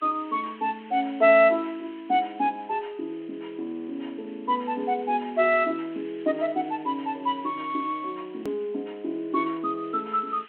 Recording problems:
telephone audio; 260 Hz to 3.3 kHz, G.726
hiss; SNR 26 dB
hard cut with a click; at 8.5 s

